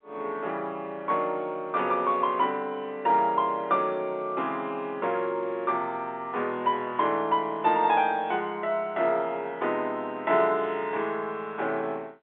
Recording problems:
telephone audio; 280 Hz to 3.6 kHz, G.711

